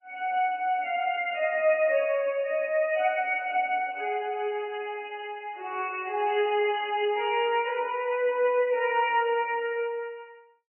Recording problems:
lossy codec; MP3, log-spectral distance 4 dB, nothing above 2.5 kHz

